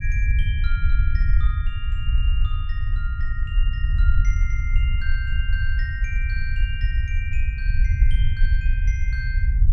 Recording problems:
low-frequency rumble; below 64 Hz, SNR -11 dB

